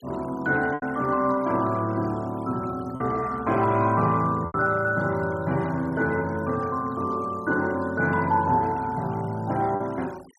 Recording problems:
denoising artefacts; signal-to-artefact ratio 23 dB
lost packets; 2% of the sound replaced, filled with repeated pitch periods

